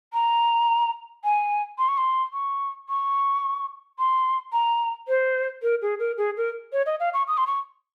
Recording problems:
none

